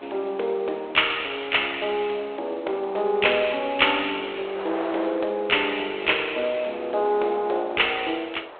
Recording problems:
telephone audio; 340 Hz to 3.5 kHz, G.726
wind on the microphone; below 1.3 kHz, SNR 17 dB

